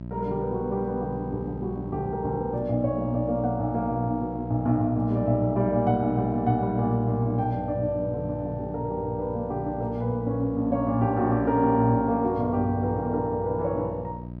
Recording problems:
hum; 60 Hz, harmonics up to 720 Hz, SNR 10 dB

